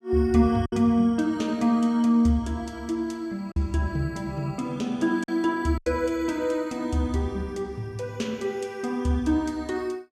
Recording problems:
lost packets; 2% of the sound replaced, filled with silence

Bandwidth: 17.5 kHz